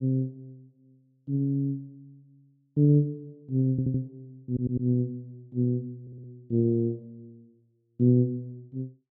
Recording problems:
audio stuttering; at 3.5 s, at 4.5 s and at 6 s

